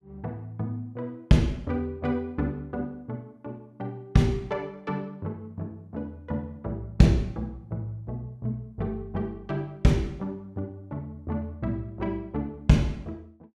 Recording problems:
none

